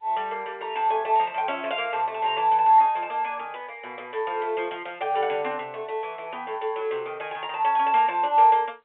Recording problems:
phone line; 240 Hz to 3.7 kHz, G.711

